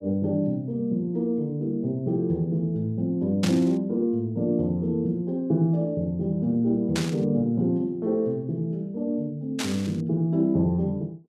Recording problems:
static burst; at 3.5 s, at 7 s and at 9.5 s; peak -1 dB vs average level

